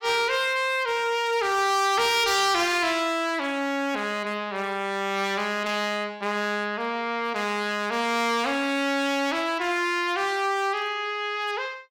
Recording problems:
distorted audio; hard clipping, signal-to-distortion ratio 10 dB

